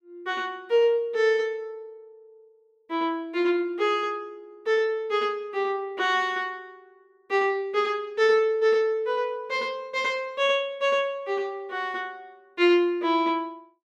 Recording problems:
none

